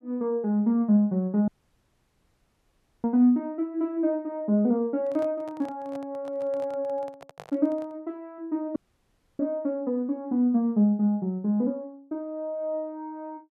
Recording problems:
dropout; at 1.5 s for 1.5 s and at 9 s for 0.5 s
microphone handling noise; from 5 to 8 s; peak -11 dB vs average level

